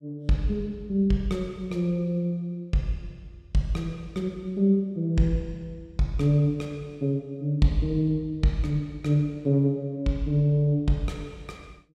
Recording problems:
none

